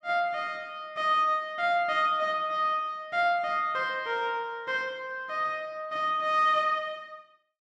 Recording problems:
none

